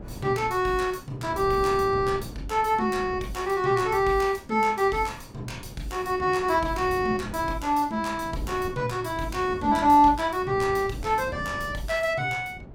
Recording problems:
wind noise; below 300 Hz, SNR 16 dB

